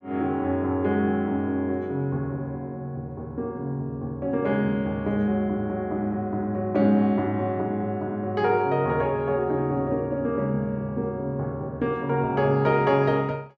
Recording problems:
none

